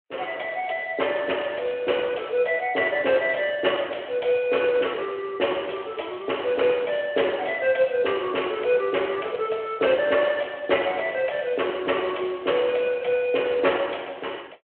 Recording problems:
phone line; 320 Hz to 3.3 kHz, Speex

